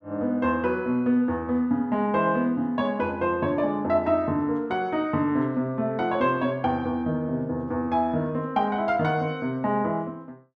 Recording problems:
none

